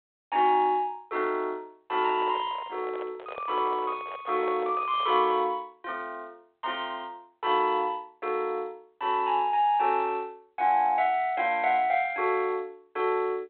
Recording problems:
telephone audio; 320 Hz to 3.7 kHz, G.726
handling noise; from 2 to 5.5 s; peak -8 dB vs average level

